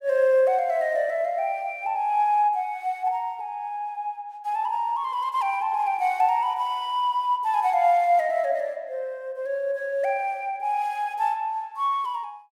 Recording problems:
none

